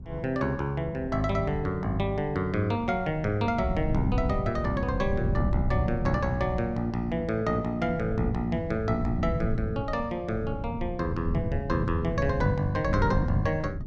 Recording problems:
wind noise; below 160 Hz, SNR 4 dB

